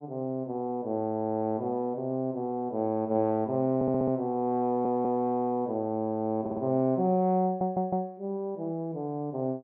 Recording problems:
stutter; 4 times, first at 4 s

